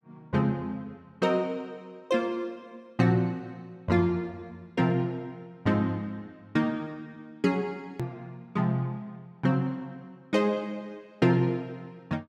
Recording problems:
hard cut with a click; at 8 s

